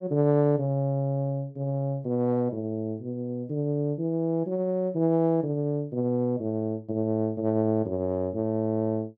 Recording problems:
none

